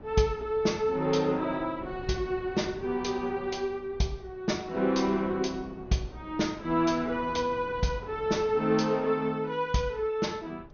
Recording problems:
low-pass filter; nothing above 6.6 kHz
wind noise; below 450 Hz, SNR 18 dB

